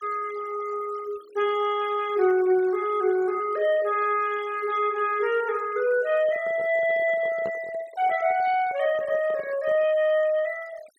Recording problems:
noise reduction artefacts; signal-to-artefact ratio 21 dB
microphone handling noise; from 6 to 10 s; peak -8 dB vs average level

